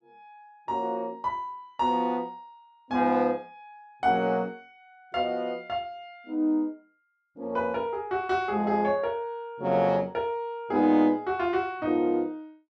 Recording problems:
none

